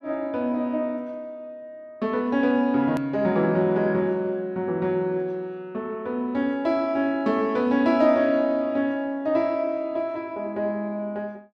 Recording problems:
edit click; at 3 s

